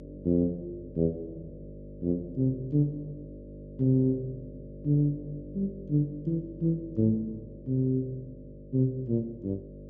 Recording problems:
treble cut off; nothing above 8 kHz
electrical hum; 50 Hz, harmonics up to 600 Hz, SNR 16 dB

